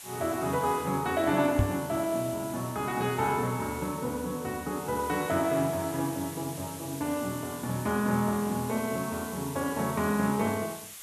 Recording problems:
hiss; slope +2 dB per octave, SNR 13 dB
microphone bump; at 1.5 s; peak +7 dB vs average level

